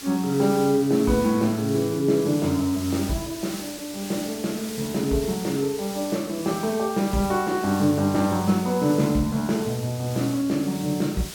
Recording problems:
hiss; SNR 13 dB

